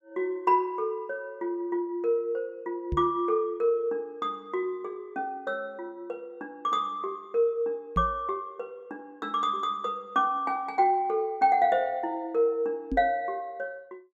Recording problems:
microphone bump; at 3 s, at 8 s and at 13 s; peak +1 dB vs average level

